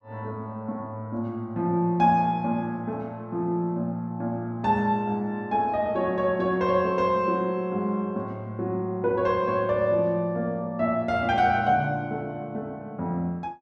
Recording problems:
none

